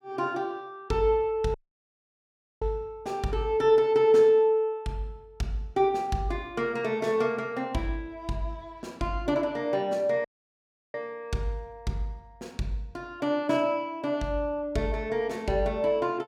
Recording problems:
dropout; at 1.5 s for 1 s and at 10 s for 0.5 s

